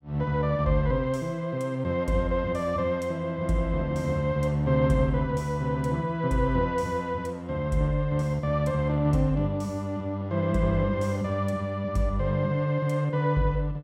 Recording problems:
none

